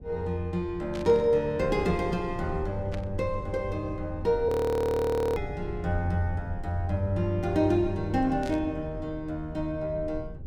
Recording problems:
low-frequency rumble; below 110 Hz, SNR 13 dB
burst of static; at 1 s, at 3 s and at 8.5 s; peak -10 dB vs average level
audio freezing; at 4.5 s for 1 s

